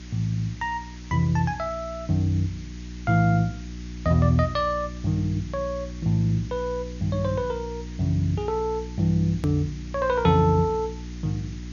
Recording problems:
treble missing; nothing above 6.9 kHz
hum; 60 Hz, harmonics up to 360 Hz, SNR 12 dB
hiss; slope +1 dB per octave, SNR 23 dB
edit click; at 9.5 s

